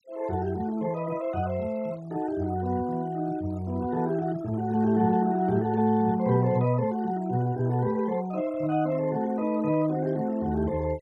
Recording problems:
denoising artefacts; signal-to-artefact ratio 25 dB

